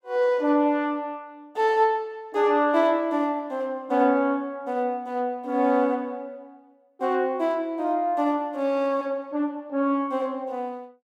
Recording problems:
none

